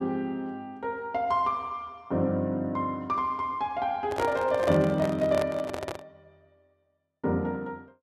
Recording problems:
handling noise; from 4 to 6 s; peak +1 dB vs average level

